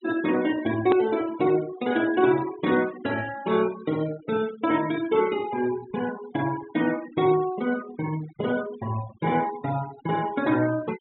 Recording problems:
treble cut off; nothing above 3.9 kHz
noise reduction artefacts; signal-to-artefact ratio 16 dB
edit click; at 1 s

